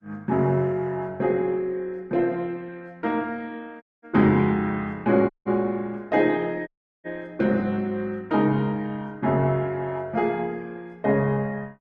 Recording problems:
codec artefacts; Opus, log-spectral distance 2 dB
dropout; at 4 s, at 5.5 s and at 6.5 s

